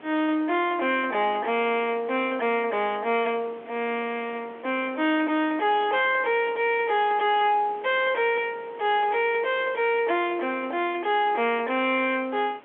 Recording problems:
phone line; 220 Hz to 3.1 kHz, G.711
distortion; soft clipping, signal-to-distortion ratio 11 dB
hiss; SNR 23 dB

